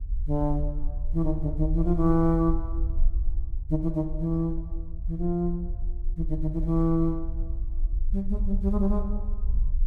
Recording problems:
rumble; below 50 Hz, strongest tone 22 Hz, SNR 5 dB

